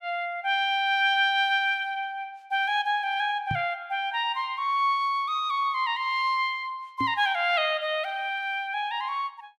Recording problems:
knock on the microphone; at 3.5 s and at 7 s; peak -3 dB vs average level

